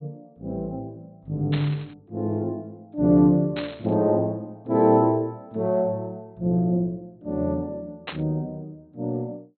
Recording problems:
low-pass filter; nothing above 4.2 kHz
static burst; at 1.5 s, at 3.5 s and at 8 s; peak -4 dB vs average level

